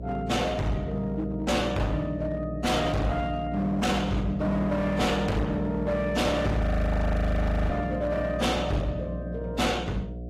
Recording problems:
codec artefacts; AAC, log-spectral distance 2 dB, nothing above 14.3 kHz
distortion; hard clipping, uneven, signal-to-distortion ratio 7 dB
electrical hum; 60 Hz, harmonics up to 720 Hz, SNR 9 dB
audio freezing; at 6.5 s for 1 s

